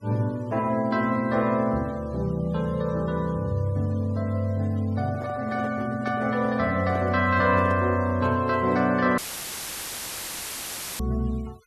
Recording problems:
noise reduction artefacts; signal-to-artefact ratio 25 dB
handling noise; from 5 to 9 s; peak -8 dB vs average level
audio cutting out; at 9 s for 2 s; filled with static

